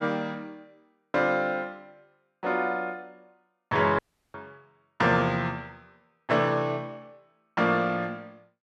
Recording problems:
dropout; at 4 s

